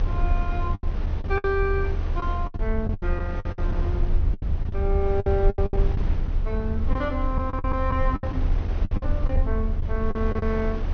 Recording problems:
treble missing; nothing above 6.3 kHz
rumble; below 78 Hz, strongest tone 30 Hz, SNR -2 dB
wind noise; below 540 Hz, SNR 8 dB
packet loss; 13% of the sound replaced, filled with the last packet

